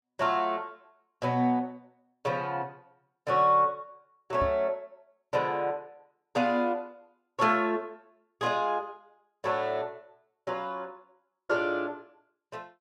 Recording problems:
microphone thump; at 4.5 s; peak -3 dB vs average level

